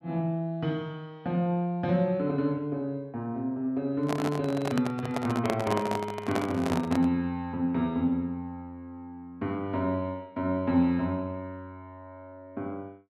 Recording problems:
handling noise; from 4 to 7 s; peak +3 dB vs average level

